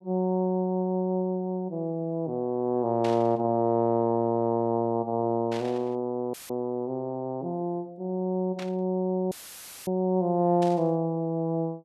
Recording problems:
static burst; 4 times, first at 3 s; peak -8 dB vs average level
audio cutting out; at 6.5 s and at 9.5 s for 0.5 s; filled with static

